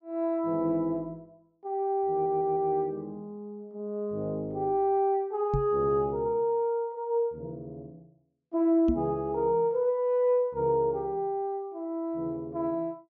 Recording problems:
treble cut off; nothing above 7.3 kHz
audio stuttering; at 2 s
knock on the microphone; at 5.5 s and at 9 s; peak +2 dB vs average level

